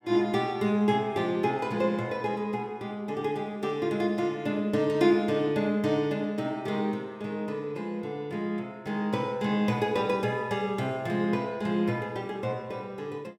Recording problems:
none

